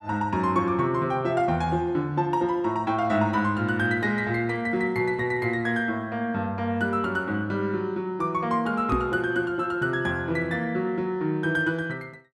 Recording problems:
knock on the microphone; at 9 s; peak +2 dB vs average level

